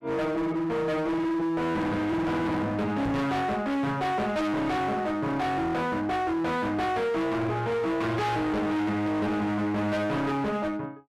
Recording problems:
distortion; hard clipping, signal-to-distortion ratio 7 dB
microphone bump; at 3 s; peak +1 dB vs average level

